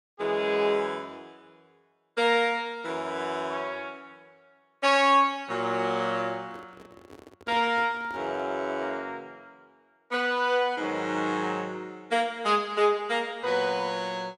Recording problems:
handling noise; from 6.5 to 8.5 s; peak -13 dB vs average level

